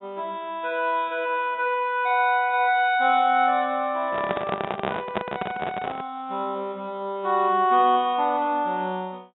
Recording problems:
low-pass filter; nothing above 3.7 kHz
microphone handling noise; from 4 to 6 s; peak +1 dB vs average level

